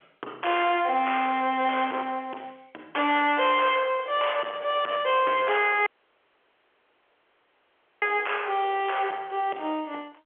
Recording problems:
phone line; 300 Hz to 3.4 kHz, G.711
distortion; soft clipping, signal-to-distortion ratio 12 dB
dropout; at 6 s for 2 s

